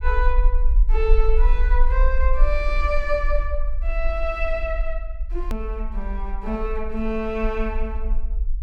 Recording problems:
rumble; below 44 Hz, SNR -2 dB
hard cut with a click; at 5.5 s

